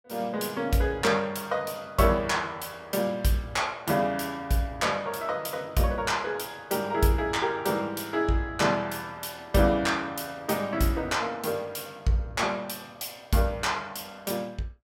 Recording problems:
none

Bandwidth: 16.5 kHz